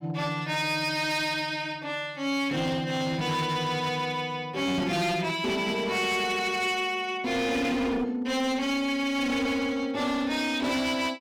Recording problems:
distorted audio; hard clipping, signal-to-distortion ratio 10 dB

